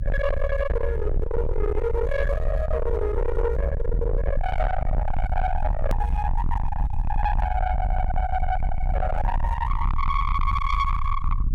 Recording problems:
distorted audio; soft clipping, signal-to-distortion ratio 6 dB
rumble; below 80 Hz, SNR 0 dB
click at an edit; at 6 s

